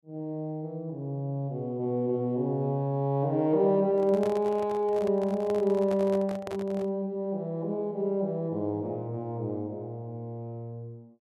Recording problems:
microphone handling noise; from 4 to 7 s; peak -6 dB vs average level

